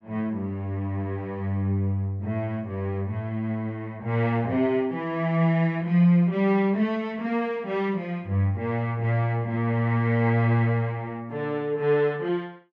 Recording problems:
none

